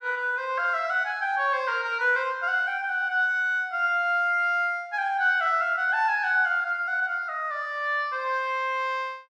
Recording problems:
none

